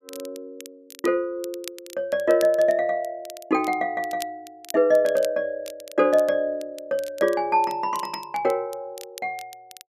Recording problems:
crackling; vinyl, SNR 20 dB

